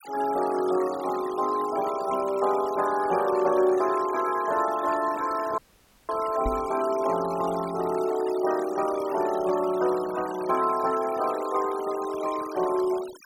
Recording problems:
denoising artefacts; signal-to-artefact ratio 16 dB
audio cutting out; at 5.5 s for 0.5 s
microphone thump; at 6.5 s; peak -1 dB vs average level

